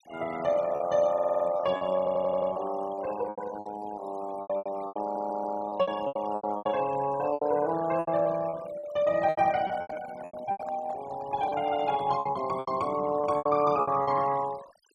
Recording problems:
denoising artefacts; signal-to-artefact ratio 18 dB
lost packets; 14% of the sound replaced, filled with repeated pitch periods
audio stuttering; at 1 s, at 2 s and at 5 s
microphone handling noise; from 9 to 12 s; peak -10 dB vs average level

